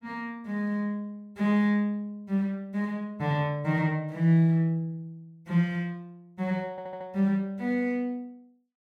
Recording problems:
stutter; at 6.5 s

